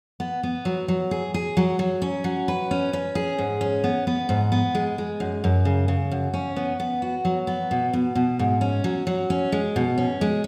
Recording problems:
none

